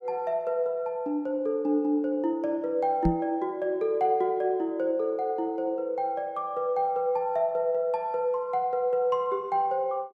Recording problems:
microphone thump; at 3 s; peak +5 dB vs average level

